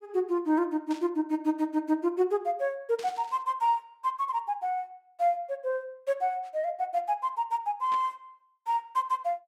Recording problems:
static burst; at 1 s, at 3 s and at 8 s; peak -11 dB vs average level

